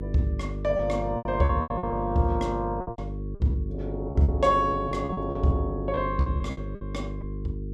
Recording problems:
electrical hum; 50 Hz, harmonics up to 450 Hz, SNR 7 dB
packet loss; 13% of the sound replaced, filled with repeated pitch periods

